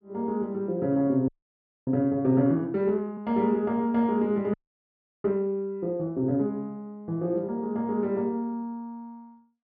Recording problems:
treble missing; nothing above 5.1 kHz
frozen audio; at 1.5 s for 0.5 s and at 4.5 s for 0.5 s

